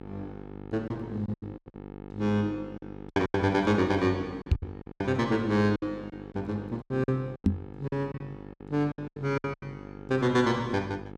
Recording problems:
mains hum; 50 Hz, harmonics up to 1.8 kHz, SNR 14 dB
packet loss; 13% of the sound replaced, filled with silence
microphone thump; at 4.5 s and at 7.5 s; peak +9 dB vs average level

